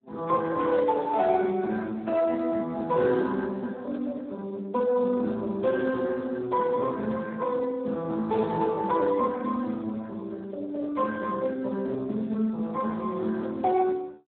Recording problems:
telephone audio; 170 Hz to 2.1 kHz, Speex

